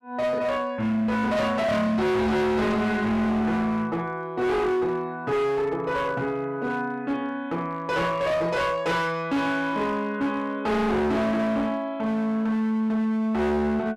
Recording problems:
distortion; hard clipping, signal-to-distortion ratio 6 dB

